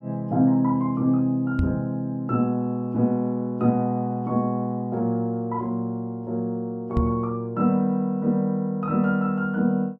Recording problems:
microphone thump; at 1.5 s and at 7 s; peak +3 dB vs average level

